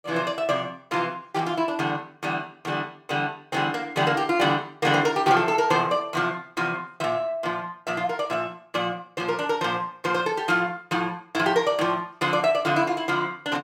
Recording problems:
none

